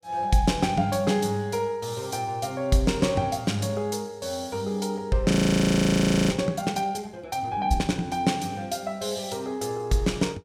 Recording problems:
frozen audio; at 5.5 s for 1 s

